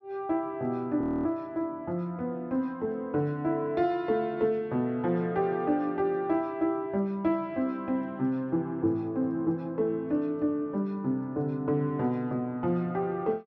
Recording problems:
frozen audio; at 1 s

